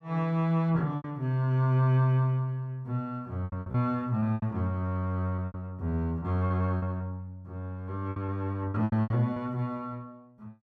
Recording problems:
packet loss; 8% of the sound replaced, filled with repeated pitch periods

